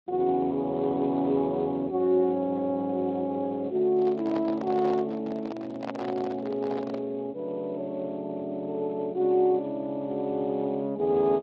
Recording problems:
lossy compression; Speex, log-spectral distance 2 dB
handling noise; from 4 to 7 s; peak -3 dB vs average level

